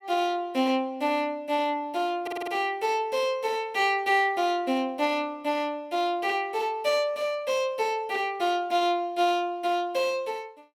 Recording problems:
stutter; at 2 s

